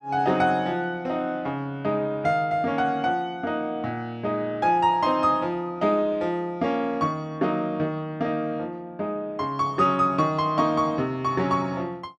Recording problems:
none

